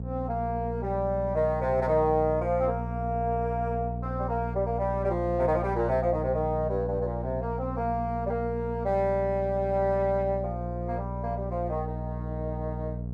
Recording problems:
electrical hum; 60 Hz, harmonics up to 660 Hz, SNR 6 dB

